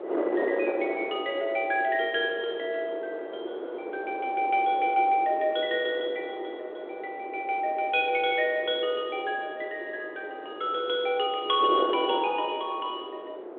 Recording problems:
phone line; 280 Hz to 3.5 kHz, G.726
wind on the microphone; below 590 Hz, SNR 8 dB

